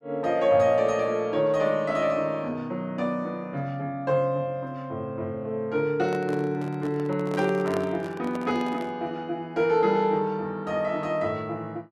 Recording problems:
handling noise; from 6 to 9 s; peak -5 dB vs average level

